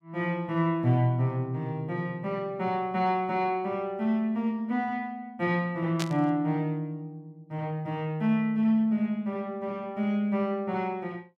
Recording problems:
static burst; at 6 s; peak 0 dB vs average level

